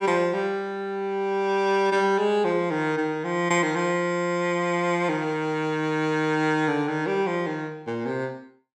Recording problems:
none

